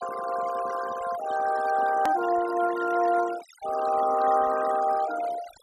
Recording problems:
noise reduction artefacts; signal-to-artefact ratio 13 dB
click at an edit; at 2 s

